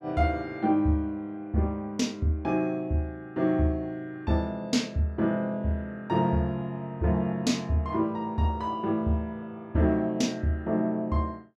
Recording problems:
none

